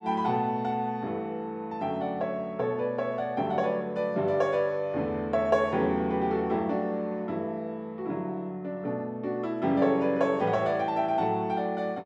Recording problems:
none

